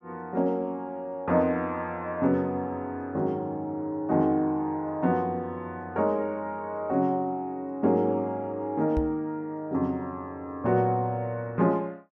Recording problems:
knock on the microphone; at 9 s; peak +1 dB vs average level

